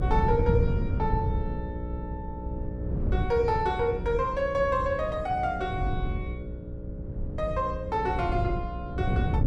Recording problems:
electrical hum; 60 Hz, harmonics up to 600 Hz, SNR 9 dB
wind noise; below 140 Hz, SNR 4 dB

